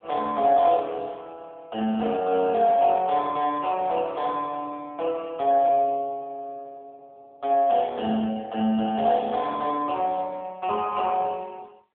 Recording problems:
phone line; 300 Hz to 3.5 kHz, AMR-NB

